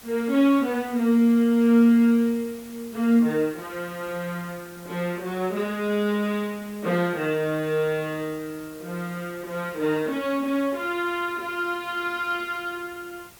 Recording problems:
hiss; slope -2 dB per octave, SNR 22 dB

